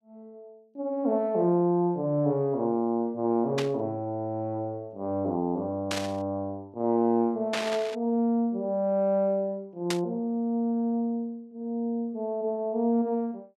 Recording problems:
burst of static; 4 times, first at 3.5 s; peak +1 dB vs average level

